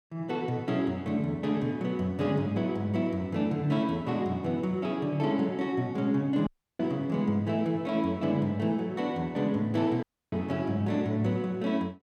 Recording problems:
audio cutting out; at 6.5 s and at 10 s

